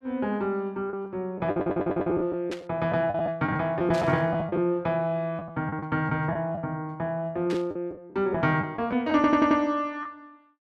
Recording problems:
lost packets; 8% of the sound replaced, filled with the last packet
audio stuttering; at 1.5 s and at 9 s
static burst; at 2.5 s, at 4 s and at 7.5 s; peak -7 dB vs average level

